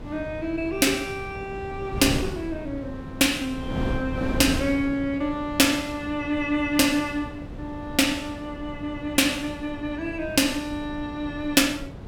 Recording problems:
wind on the microphone; below 320 Hz, SNR 11 dB

